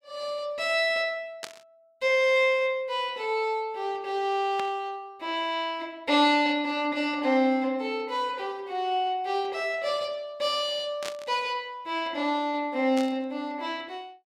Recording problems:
burst of static; 4 times, first at 1.5 s; peak -4 dB vs average level

